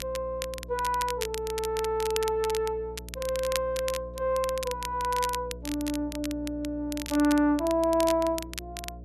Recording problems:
hum; 60 Hz, harmonics up to 660 Hz, SNR 15 dB
crackle; vinyl, SNR 10 dB

